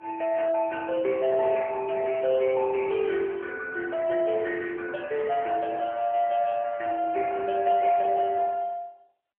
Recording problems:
phone line; 320 Hz to 2.9 kHz, AMR-NB

